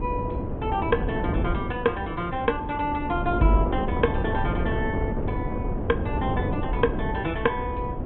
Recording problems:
treble cut off; nothing above 3.5 kHz
lossy codec; Vorbis, log-spectral distance 2 dB
wind noise; below 350 Hz, SNR 2 dB

